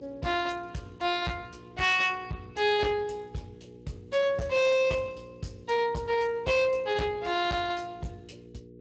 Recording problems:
lossy codec; Speex, log-spectral distance 4 dB
distortion; hard clipping, signal-to-distortion ratio 11 dB
electrical hum; 60 Hz, harmonics up to 480 Hz, SNR 22 dB

